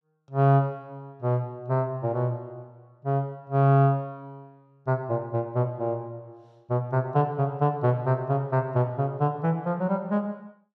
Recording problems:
none

